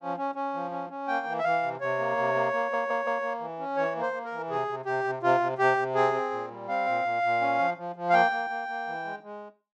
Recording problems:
stutter; at 2.5 s

